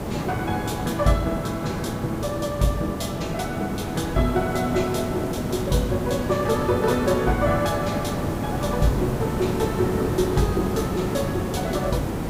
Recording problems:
background hiss; slope -8 dB per octave, SNR 3 dB

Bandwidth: 15.5 kHz